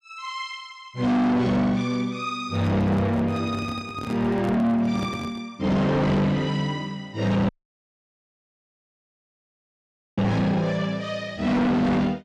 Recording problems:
distorted audio; soft clipping, signal-to-distortion ratio 6 dB
handling noise; from 2.5 to 5.5 s; peak -4 dB vs average level
dropout; at 7.5 s for 2.5 s

